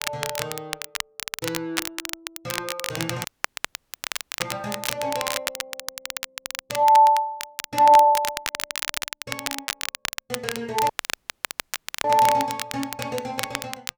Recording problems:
crackling; vinyl, SNR 8 dB
audio cutting out; at 3.5 s for 1 s and at 11 s for 1 s

